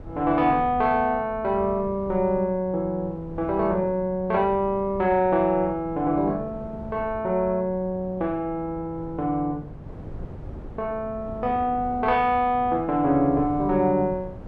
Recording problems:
wind on the microphone; below 300 Hz, SNR 17 dB

